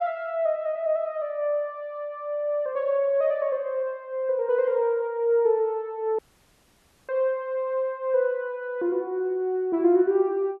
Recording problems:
audio cutting out; at 6 s for 1 s

